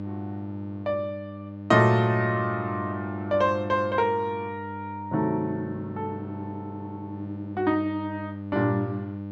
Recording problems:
electrical hum; 50 Hz, harmonics up to 900 Hz, SNR 10 dB

